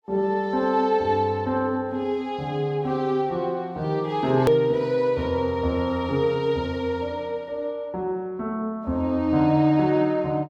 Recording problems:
edit click; at 4.5 s

